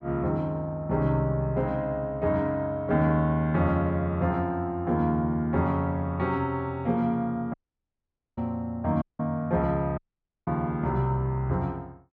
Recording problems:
audio cutting out; at 7.5 s for 1 s, at 9 s and at 10 s

